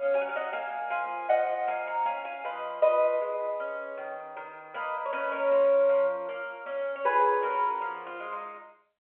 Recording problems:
telephone audio; 300 Hz to 3.3 kHz, G.711

